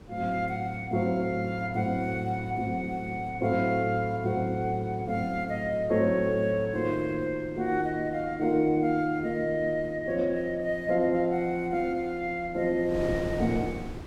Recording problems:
wind noise; below 410 Hz, SNR 16 dB

